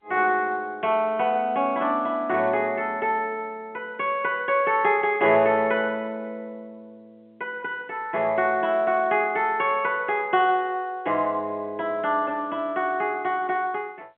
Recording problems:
phone line; 220 Hz to 3.5 kHz, G.711

